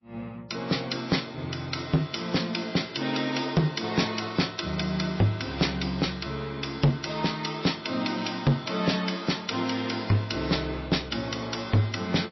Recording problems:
codec artefacts; MP3, log-spectral distance 6 dB, nothing above 5.7 kHz
distorted audio; hard clipping, signal-to-distortion ratio 11 dB

